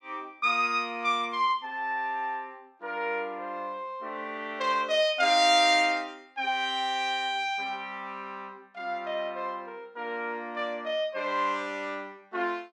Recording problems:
none

